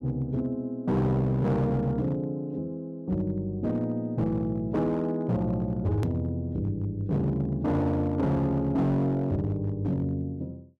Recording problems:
distorted audio; hard clipping, signal-to-distortion ratio 11 dB
edit click; at 6 s

